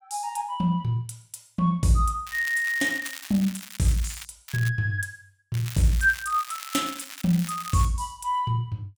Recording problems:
crackling; from 2.5 to 4.5 s, at 4.5 s and from 5.5 to 8 s; loose cable, SNR 13 dB

